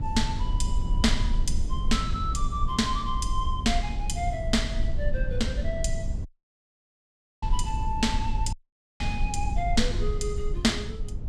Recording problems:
hum; 50 Hz, harmonics up to 800 Hz, SNR 18 dB
low-frequency rumble; below 64 Hz, SNR 1 dB
audio cutting out; at 6.5 s for 1 s and at 8.5 s

